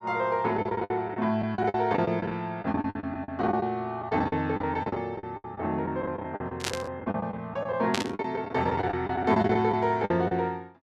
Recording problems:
lost packets; 16% of the sound replaced, filled with the last packet
burst of static; at 6.5 s and at 8 s; peak +4 dB vs average level

